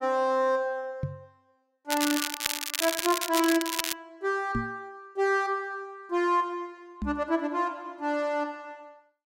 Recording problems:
microphone bump; at 1 s, at 4.5 s and at 7 s; peak +1 dB vs average level
crackle; from 2 to 4 s; loose cable, SNR 1 dB

